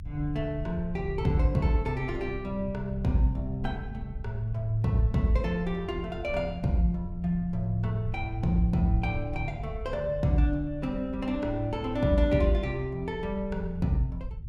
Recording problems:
low-frequency rumble; below 88 Hz, SNR 11 dB

